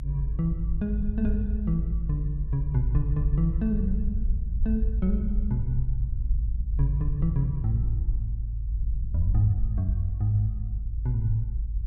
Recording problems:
low-frequency rumble; below 60 Hz, strongest tone 52 Hz, SNR 0 dB

